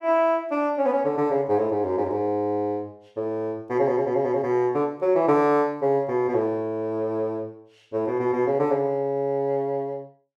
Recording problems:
none

